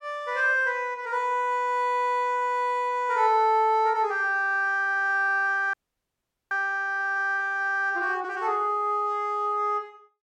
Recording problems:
audio freezing; at 5.5 s for 1 s

